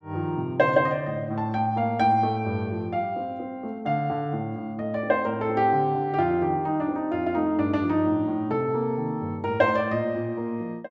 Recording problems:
none

